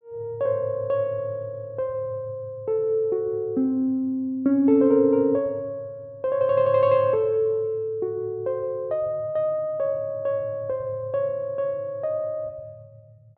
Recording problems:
none

